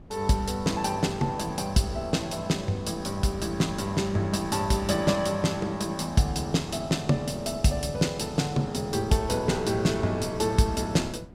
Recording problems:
wind on the microphone; below 240 Hz, SNR 18 dB

